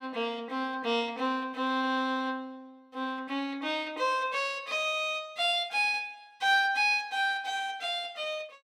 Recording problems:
none

